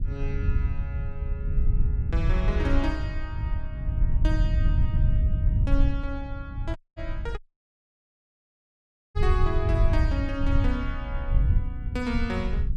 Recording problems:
rumble; below 84 Hz, SNR -6 dB
audio cutting out; at 7 s and at 7.5 s for 2 s

